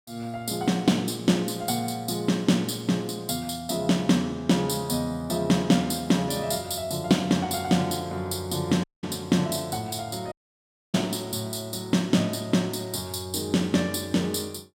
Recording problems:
audio cutting out; at 9 s and at 10 s for 0.5 s

